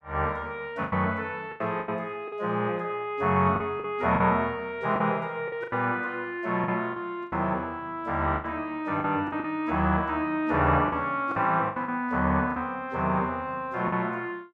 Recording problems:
packet loss; 8% of the sound replaced, filled with the last packet

